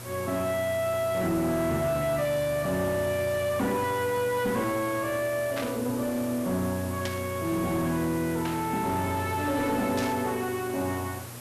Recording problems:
distorted audio; soft clipping, signal-to-distortion ratio 11 dB
hum; 60 Hz, harmonics up to 840 Hz, SNR 16 dB
background hiss; slope -4 dB per octave, SNR 13 dB
burst of static; 4 times, first at 5.5 s; peak -3 dB vs average level

